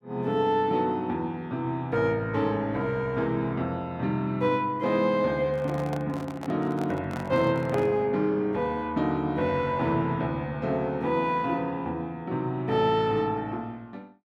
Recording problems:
handling noise; from 5.5 to 8 s; peak -6 dB vs average level

